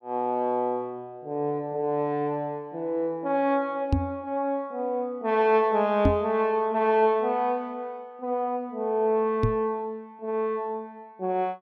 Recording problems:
microphone bump; at 4 s, at 6 s and at 9.5 s; peak +7 dB vs average level

